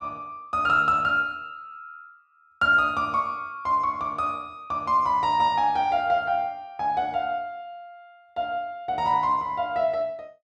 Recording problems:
none

